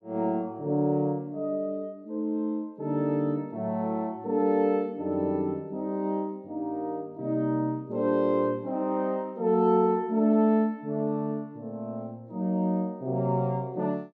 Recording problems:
none

